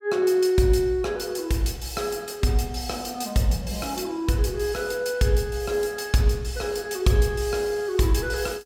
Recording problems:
none

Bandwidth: 17 kHz